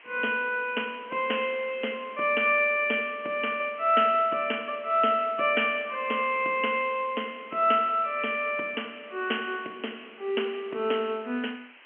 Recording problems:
telephone audio; 260 Hz to 3.1 kHz, G.711
hiss; SNR 23 dB

